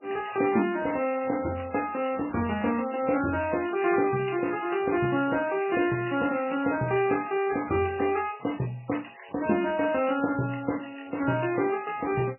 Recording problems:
lossy compression; MP3, log-spectral distance 6 dB, nothing above 2.8 kHz

